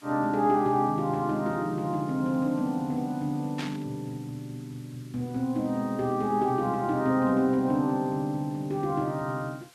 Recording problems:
background hiss; slope 0 dB per octave, SNR 27 dB
burst of static; at 3.5 s; peak -5 dB vs average level

